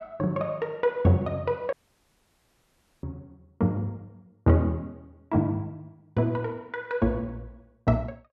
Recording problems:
audio cutting out; at 1.5 s for 1.5 s

